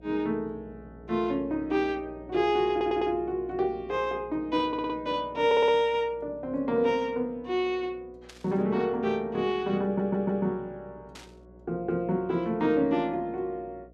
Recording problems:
electrical hum; 60 Hz, harmonics up to 720 Hz, SNR 24 dB
audio stuttering; 4 times, first at 2.5 s
burst of static; at 8.5 s and at 11 s; peak -13 dB vs average level

